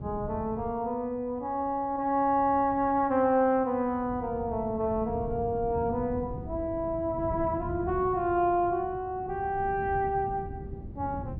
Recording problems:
wind on the microphone; below 190 Hz, SNR 12 dB

